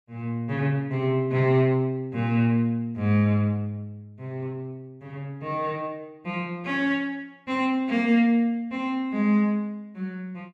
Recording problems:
none

